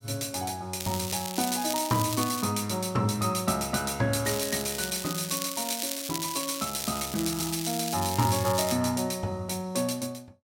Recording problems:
crackle; from 1 to 2.5 s and from 4.5 to 8.5 s; loose cable, SNR 5 dB

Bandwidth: 16.5 kHz